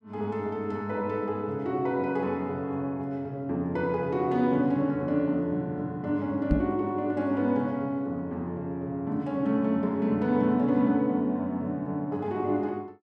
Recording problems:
microphone bump; at 6.5 s; peak +6 dB vs average level

